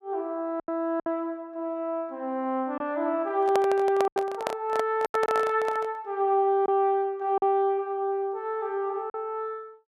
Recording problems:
packet loss; 5% of the sound replaced, filled with silence
handling noise; from 3.5 to 6 s; peak +3 dB vs average level

